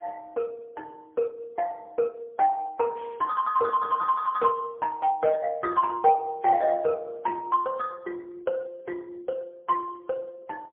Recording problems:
phone line; 320 Hz to 2.2 kHz, AMR-NB, then MP3
static burst; at 3 s, at 5 s and at 6.5 s; peak -20 dB vs average level

